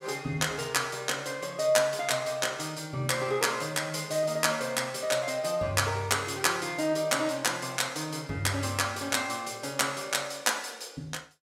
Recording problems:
none

